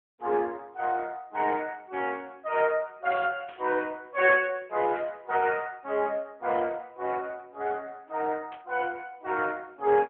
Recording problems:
telephone audio; 240 Hz to 3.3 kHz, AMR-NB
burst of static; 4 times, first at 2 s; peak -15 dB vs average level

